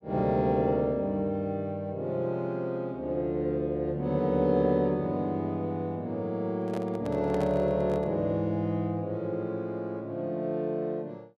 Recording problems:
handling noise; from 6.5 to 8 s; peak -6 dB vs average level

